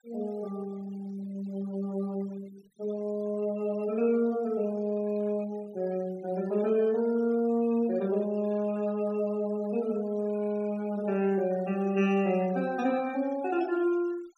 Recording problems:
denoising artefacts; signal-to-artefact ratio 23 dB

